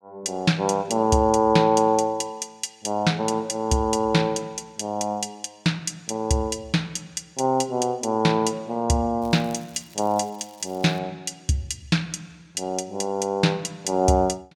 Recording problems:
crackling; from 9 to 11 s; loose cable, SNR 26 dB

